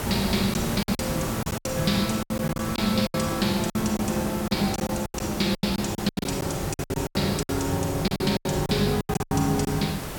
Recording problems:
hiss; slope -5 dB per octave, SNR 6 dB
lost packets; 16% of the sound replaced, filled with silence

